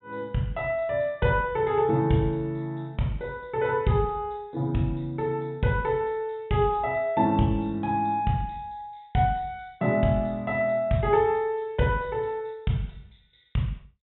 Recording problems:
low-pass filter; nothing above 3.6 kHz

